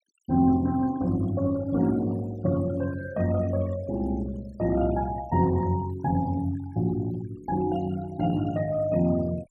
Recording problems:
denoising artefacts; signal-to-artefact ratio 20 dB

